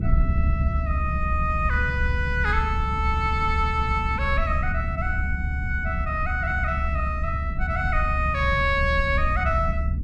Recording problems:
low-frequency rumble; below 82 Hz, SNR 1 dB

